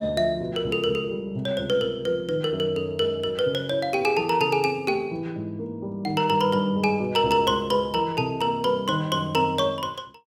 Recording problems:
none

